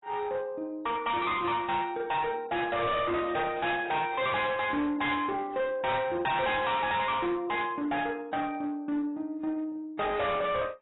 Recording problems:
lossy compression; AAC, log-spectral distance 3 dB, nothing above 3.8 kHz
distortion; hard clipping, uneven, signal-to-distortion ratio 7 dB

